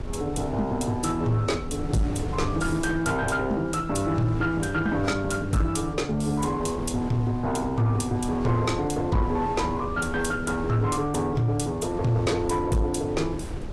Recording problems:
codec artefacts; AAC, log-spectral distance 2 dB, nothing above 11 kHz
distorted audio; soft clipping, signal-to-distortion ratio 11 dB
wind on the microphone; below 280 Hz, SNR 11 dB

